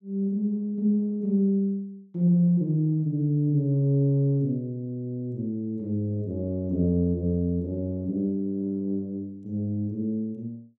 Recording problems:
none

